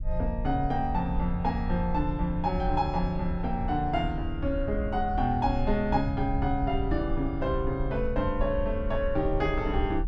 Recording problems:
rumble; below 72 Hz, SNR 5 dB

